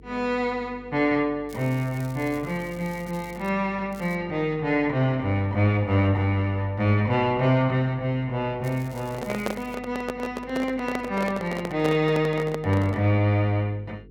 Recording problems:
hum; 50 Hz, harmonics up to 450 Hz, SNR 23 dB
crackling; from 1.5 to 3.5 s, at 4 s and from 8.5 to 10 s; loose cable, SNR 24 dB
handling noise; from 9 to 13 s; peak +1 dB vs average level

